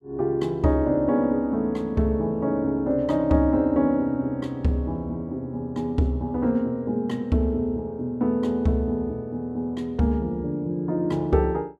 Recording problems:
none

